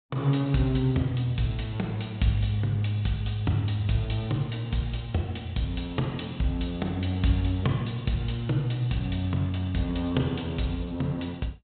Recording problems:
low-pass filter; nothing above 4 kHz

